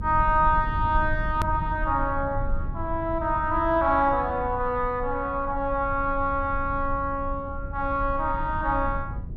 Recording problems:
low-frequency rumble; below 84 Hz, SNR 9 dB
click at an edit; at 1.5 s

